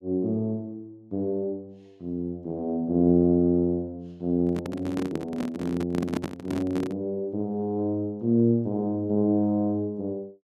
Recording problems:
microphone handling noise; from 4.5 to 7 s; peak +1 dB vs average level

